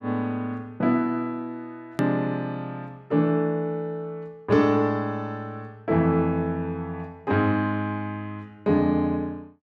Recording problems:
edit click; at 2 s

